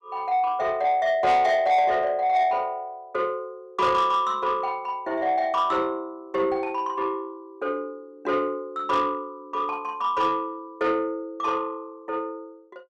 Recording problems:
distortion; soft clipping, signal-to-distortion ratio 11 dB

